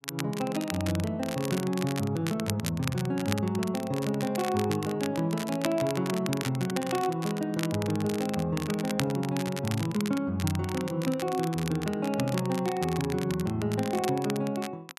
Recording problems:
crackle; vinyl, SNR 10 dB

